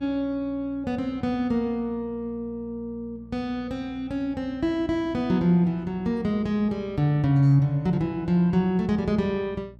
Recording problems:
hum; 60 Hz, harmonics up to 600 Hz, SNR 23 dB

